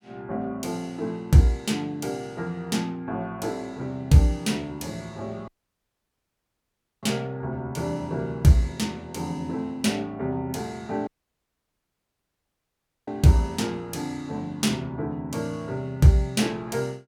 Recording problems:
audio cutting out; at 5.5 s for 1.5 s and at 11 s for 2 s

